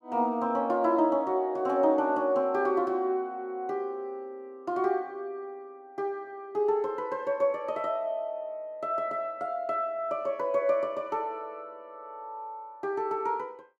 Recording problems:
none

